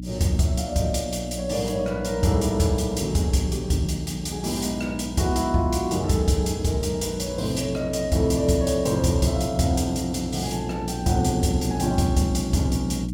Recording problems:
hum; 60 Hz, harmonics up to 300 Hz, SNR 9 dB

